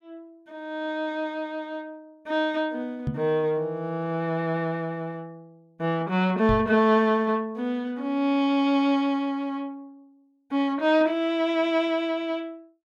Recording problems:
microphone thump; at 3 s and at 6.5 s; peak +1 dB vs average level

